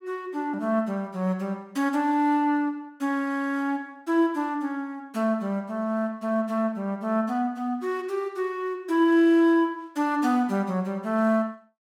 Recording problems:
none

